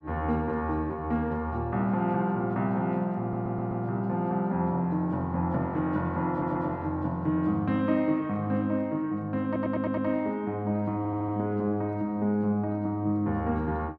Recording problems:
stutter; 4 times, first at 3 s

